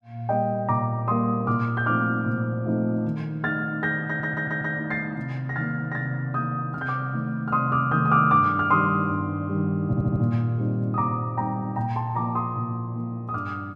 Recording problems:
stutter; at 4 s and at 10 s

